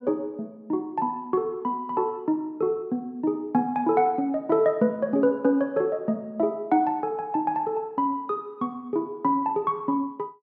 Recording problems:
none

